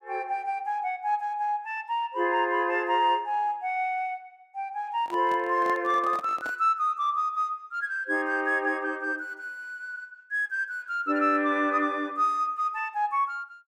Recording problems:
handling noise; from 5 to 6.5 s; peak -8 dB vs average level

